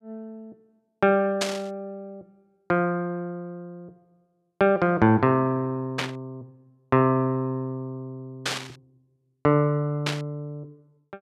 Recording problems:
burst of static; 4 times, first at 1.5 s; peak +2 dB vs average level

